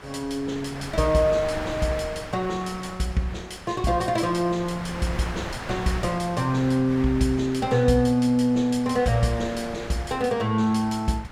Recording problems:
wind on the microphone; below 1.8 kHz, SNR 12 dB

